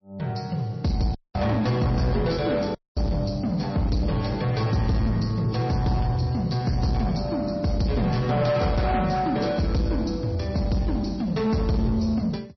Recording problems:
codec artefacts; MP3, log-spectral distance 3 dB, nothing above 5.8 kHz
distortion; soft clipping, signal-to-distortion ratio 11 dB
audio cutting out; at 1 s and at 3 s

